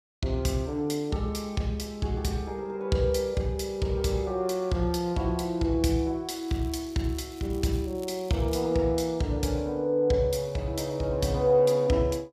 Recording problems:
crackle; from 6.5 to 8.5 s; loose cable, SNR 25 dB

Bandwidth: 15 kHz